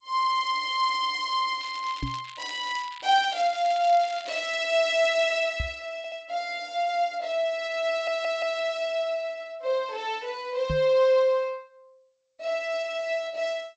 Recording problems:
codec artefacts; G.722, log-spectral distance 4 dB, nothing above 7.3 kHz
crackle; from 1.5 to 4.5 s; loose cable, SNR 18 dB
knock on the microphone; at 2 s, at 5.5 s and at 11 s; peak -1 dB vs average level
audio stuttering; at 6 s and at 8 s

